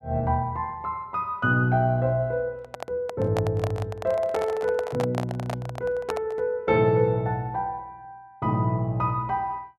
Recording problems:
microphone handling noise; from 2.5 to 6.5 s; peak 0 dB vs average level

